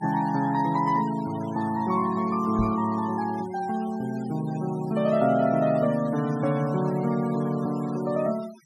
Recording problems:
denoising artefacts; signal-to-artefact ratio 19 dB
knock on the microphone; at 2.5 s; peak 0 dB vs average level

